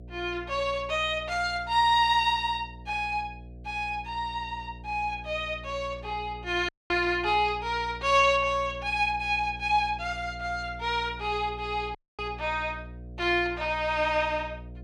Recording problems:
electrical hum; 60 Hz, harmonics up to 720 Hz, SNR 16 dB
dropout; at 6.5 s and at 12 s

